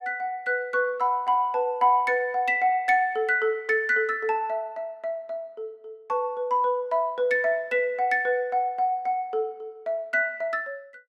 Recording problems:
none

